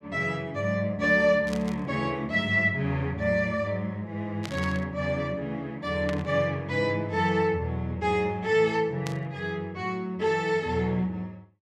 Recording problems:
static burst; 4 times, first at 1.5 s; peak -6 dB vs average level

